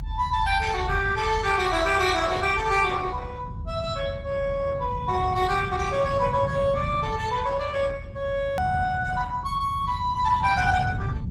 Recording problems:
lossy compression; Opus, log-spectral distance 3 dB, nothing above 17.1 kHz
rumble; below 120 Hz, SNR 7 dB
click at an edit; at 8.5 s

